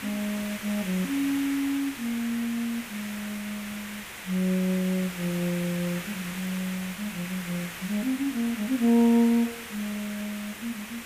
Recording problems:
background hiss; SNR 9 dB

